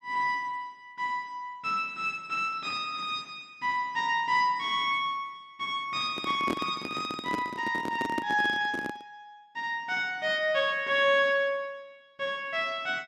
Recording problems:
handling noise; from 6 to 9 s; peak +2 dB vs average level

